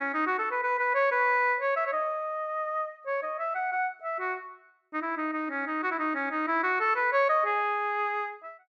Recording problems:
none

